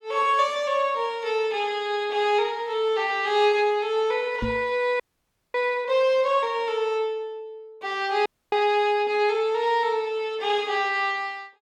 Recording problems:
microphone bump; at 4.5 s; peak -1 dB vs average level
frozen audio; at 5 s for 0.5 s and at 8.5 s

